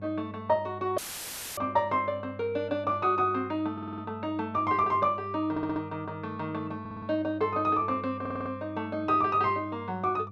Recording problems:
electrical hum; 50 Hz, harmonics up to 500 Hz, SNR 16 dB
dropout; at 1 s for 0.5 s; filled with static
stutter; 4 times, first at 3.5 s

